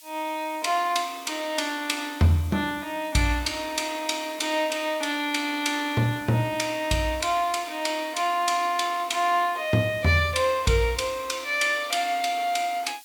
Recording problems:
hiss; SNR 21 dB

